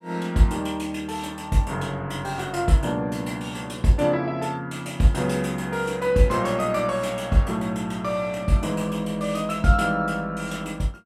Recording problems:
none

